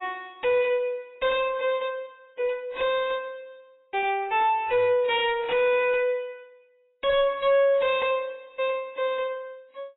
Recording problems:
codec artefacts; AAC, log-spectral distance 2 dB, nothing above 3.4 kHz
distorted audio; soft clipping, signal-to-distortion ratio 7 dB

